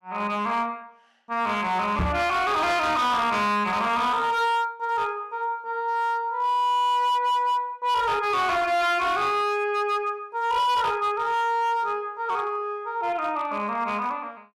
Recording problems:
distortion; hard clipping, signal-to-distortion ratio 10 dB
microphone bump; at 2 s; peak +1 dB vs average level

